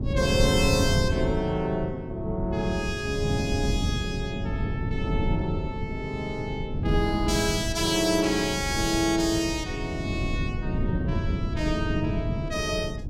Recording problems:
low-frequency rumble; below 180 Hz, SNR 3 dB

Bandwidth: 16.5 kHz